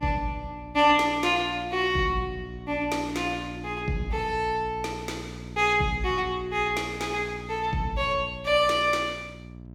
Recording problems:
hum; 60 Hz, harmonics up to 720 Hz, SNR 15 dB

